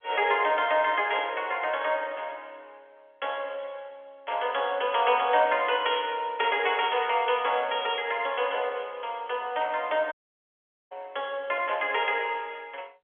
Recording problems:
telephone audio; 370 Hz to 3.4 kHz, G.711
dropout; at 10 s for 1 s

